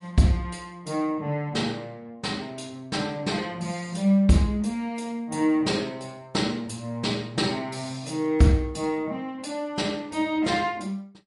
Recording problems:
lossy compression; MP3, log-spectral distance 2 dB, nothing above 11 kHz

